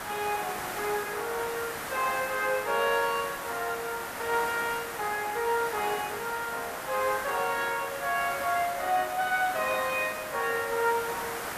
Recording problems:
background hiss; SNR 6 dB

